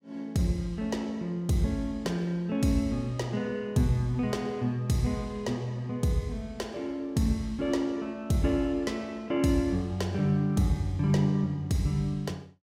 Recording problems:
none

